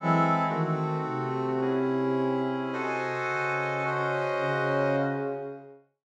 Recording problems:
none

